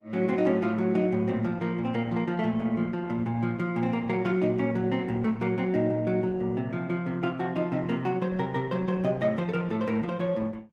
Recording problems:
lossy codec; Opus, log-spectral distance 2 dB

